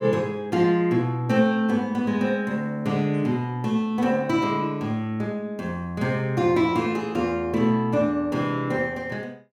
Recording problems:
none

